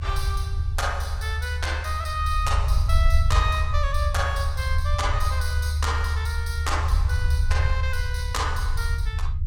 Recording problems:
low-frequency rumble; below 78 Hz, SNR -3 dB

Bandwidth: 17.5 kHz